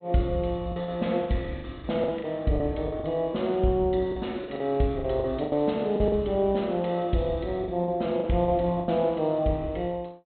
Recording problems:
treble missing; nothing above 4 kHz
packet loss; 10% of the sound replaced, filled with the last packet

